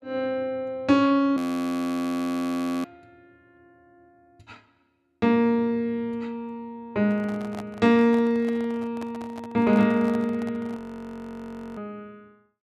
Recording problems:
frozen audio; at 1.5 s for 1.5 s and at 11 s for 1 s
handling noise; from 7 to 11 s; peak -9 dB vs average level

